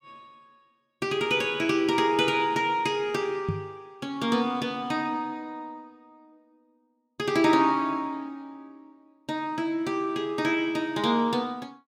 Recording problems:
knock on the microphone; at 3.5 s; peak +1 dB vs average level

